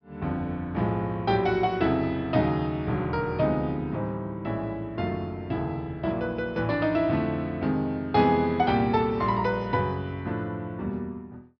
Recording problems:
treble missing; nothing above 5.5 kHz

